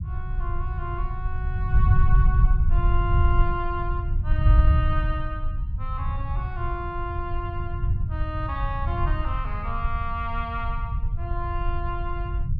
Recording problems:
low-frequency rumble; below 84 Hz, SNR -6 dB

